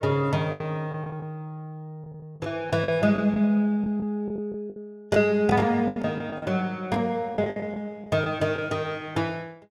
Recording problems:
packet loss; 10% of the sound replaced, filled with the last packet

